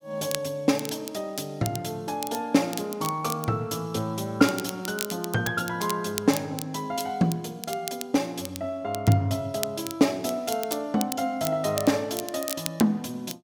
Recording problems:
crackling; vinyl, SNR 10 dB

